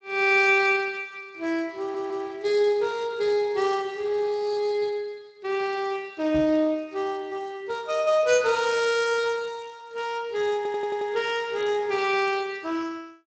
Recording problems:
lossy compression; Speex, log-spectral distance 4 dB
stutter; at 2 s and at 11 s
microphone bump; at 6.5 s; peak -6 dB vs average level

